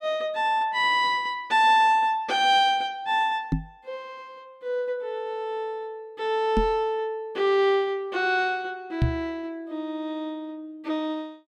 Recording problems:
knock on the microphone; at 3.5 s, at 6.5 s and at 9 s; peak +5 dB vs average level

